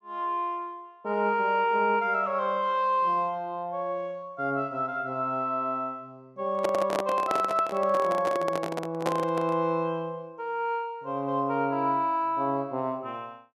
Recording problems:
handling noise; from 6.5 to 9.5 s; peak +2 dB vs average level

